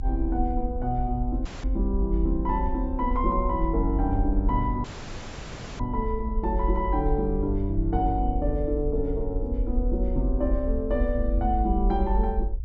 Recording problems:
treble cut off; nothing above 8 kHz
rumble; below 50 Hz, strongest tone 46 Hz, SNR 2 dB
audio cutting out; at 1.5 s and at 5 s for 1 s

